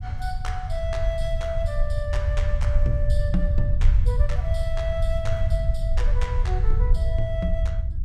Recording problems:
low-frequency rumble; below 72 Hz, SNR -7 dB

